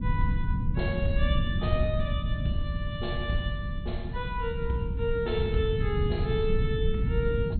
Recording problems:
treble cut off; nothing above 4.3 kHz
low-frequency rumble; below 130 Hz, SNR -2 dB

